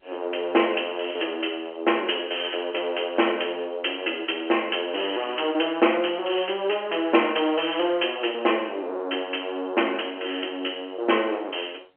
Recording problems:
telephone audio; 280 Hz to 3.2 kHz, G.711

